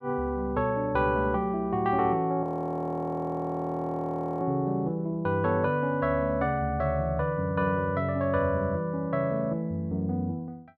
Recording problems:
frozen audio; at 2.5 s for 2 s

